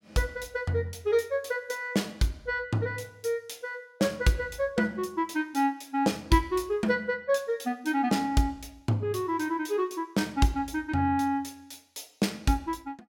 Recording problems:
none

